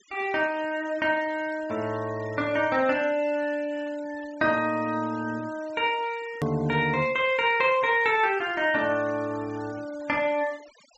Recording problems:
treble missing; nothing above 7.9 kHz
denoising artefacts; signal-to-artefact ratio 22 dB
hard cut with a click; at 6.5 s

